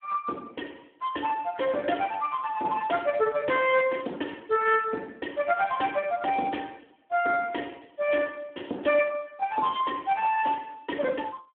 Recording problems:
phone line; 220 Hz to 2.9 kHz, Speex

